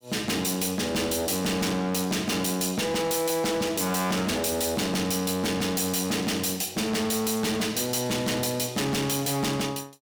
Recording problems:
distorted audio; hard clipping, signal-to-distortion ratio 6 dB

